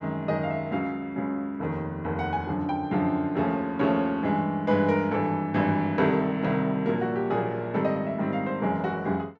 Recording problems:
none

